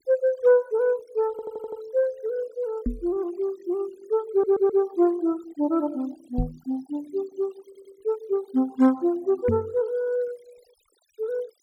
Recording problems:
denoising artefacts; signal-to-artefact ratio 25 dB
stutter; at 1.5 s, at 4.5 s and at 7.5 s
microphone bump; at 3 s, at 6.5 s and at 9.5 s; peak +3 dB vs average level

